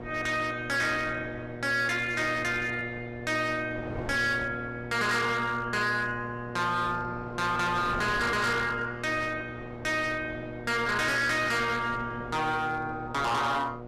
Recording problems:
distorted audio; hard clipping, signal-to-distortion ratio 7 dB
electrical hum; 60 Hz, harmonics up to 1.3 kHz, SNR 11 dB
wind noise; below 790 Hz, SNR 16 dB

